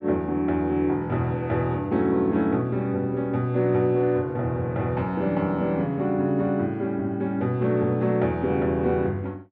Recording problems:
none

